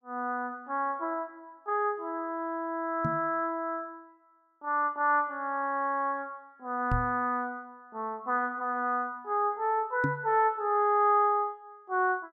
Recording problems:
knock on the microphone; at 3 s, at 7 s and at 10 s; peak +2 dB vs average level

